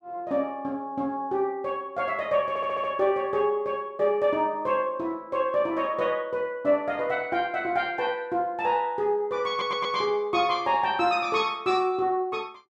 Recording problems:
stutter; at 2.5 s and at 9.5 s

